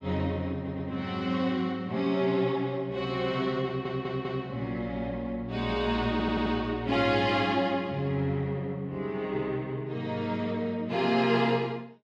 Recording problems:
audio stuttering; at 0.5 s, at 3.5 s and at 6 s

